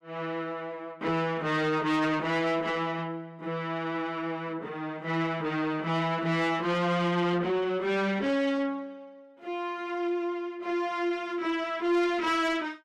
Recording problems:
distortion; soft clipping, signal-to-distortion ratio 11 dB

